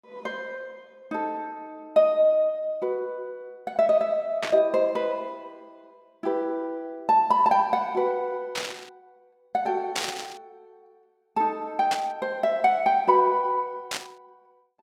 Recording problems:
burst of static; 5 times, first at 4.5 s; peak +1 dB vs average level

